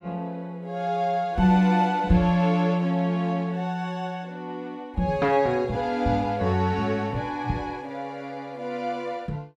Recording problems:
none

